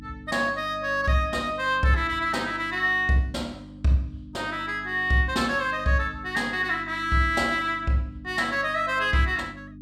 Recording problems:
hum; 50 Hz, harmonics up to 300 Hz, SNR 18 dB

